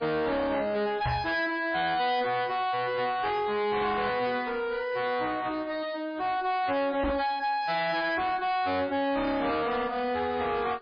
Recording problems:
lossy compression; MP3, log-spectral distance 3 dB, nothing above 4.1 kHz
distortion; hard clipping, uneven, signal-to-distortion ratio 7 dB
microphone thump; at 1 s and at 7 s; peak +3 dB vs average level

